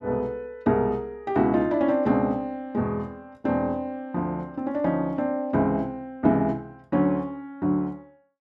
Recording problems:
none

